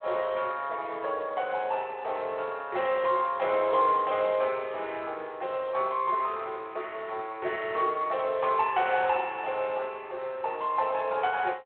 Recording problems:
telephone audio; 340 Hz to 3.7 kHz, Speex

